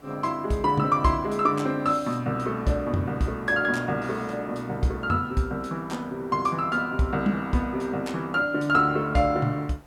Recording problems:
background hiss; slope -7 dB per octave, SNR 26 dB

